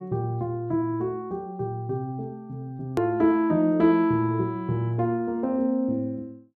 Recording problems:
hard cut with a click; at 3 s

